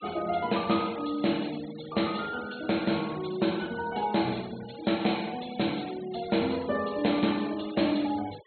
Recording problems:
treble cut off; nothing above 4.3 kHz
denoising artefacts; signal-to-artefact ratio 17 dB

